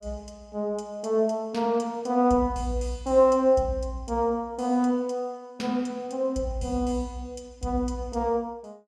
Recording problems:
none

